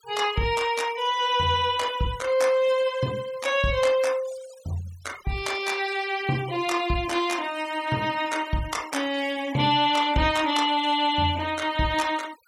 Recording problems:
denoising artefacts; signal-to-artefact ratio 19 dB

